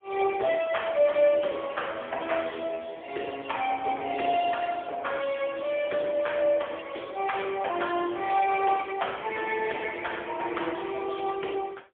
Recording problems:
telephone audio; 300 Hz to 3.4 kHz, AMR-NB, then MP3

